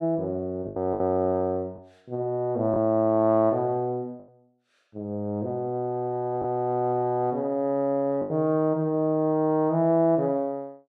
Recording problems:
packet loss; 3% of the sound replaced, filled with the last packet

